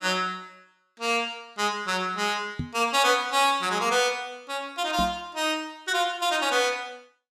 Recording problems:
microphone thump; at 2.5 s and at 5 s; peak -1 dB vs average level

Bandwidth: 15.5 kHz